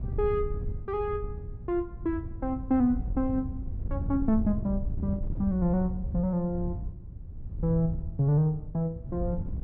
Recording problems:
wind noise; below 100 Hz, SNR 7 dB

